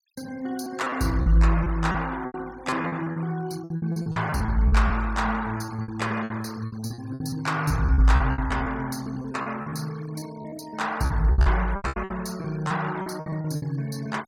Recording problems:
noise reduction artefacts; signal-to-artefact ratio 21 dB
packet loss; 16% of the sound replaced, filled with repeated pitch periods

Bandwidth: 16.5 kHz